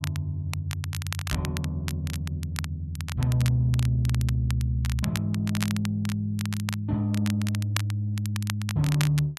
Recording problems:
crackling; vinyl, SNR 10 dB

